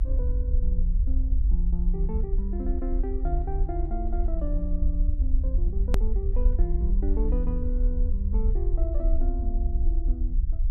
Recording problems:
rumble; below 54 Hz, strongest tone 32 Hz, SNR -8 dB
edit click; at 6 s

